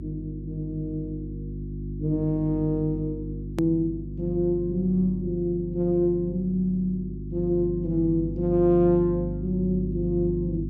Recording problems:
hum; 50 Hz, harmonics up to 350 Hz, SNR 8 dB
edit click; at 3.5 s

